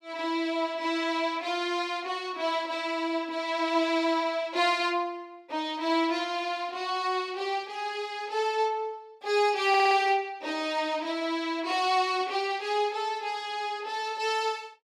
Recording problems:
audio stuttering; at 9.5 s

